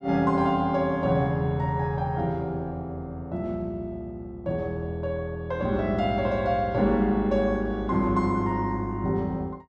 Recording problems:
none

